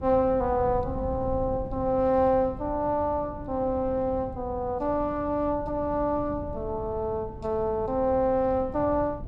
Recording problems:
wind on the microphone; below 180 Hz, SNR 13 dB

